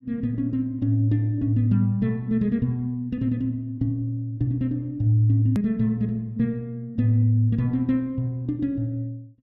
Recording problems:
edit click; at 5.5 s

